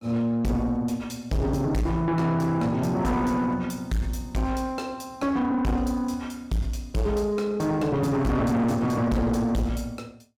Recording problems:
distorted audio; soft clipping, signal-to-distortion ratio 7 dB

